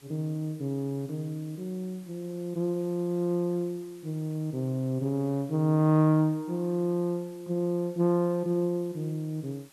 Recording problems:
background hiss; slope -1 dB per octave, SNR 27 dB

